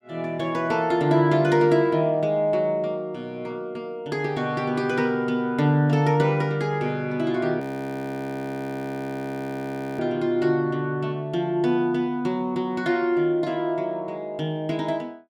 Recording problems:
audio freezing; at 7.5 s for 2.5 s

